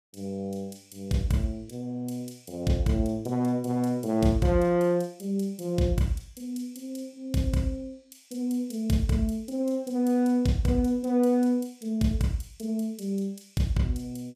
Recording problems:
none

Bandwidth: 15 kHz